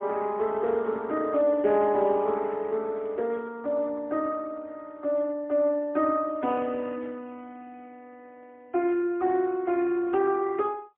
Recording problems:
telephone audio; 260 Hz to 3.5 kHz, AMR-NB, then MP3

